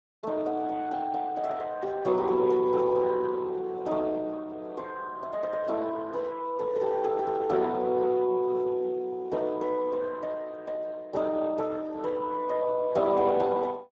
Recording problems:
codec artefacts; Speex, log-spectral distance 3 dB

